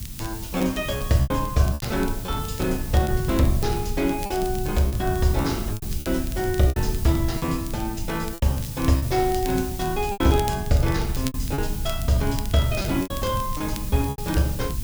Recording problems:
hiss; slope +2 dB per octave, SNR 12 dB
low-frequency rumble; below 110 Hz, SNR 7 dB
crackling; vinyl, SNR 18 dB
packet loss; 8% of the sound replaced, filled with repeated pitch periods

